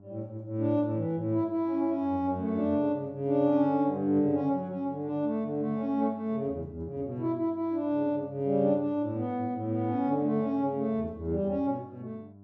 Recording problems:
mains hum; 50 Hz, harmonics up to 700 Hz, SNR 23 dB

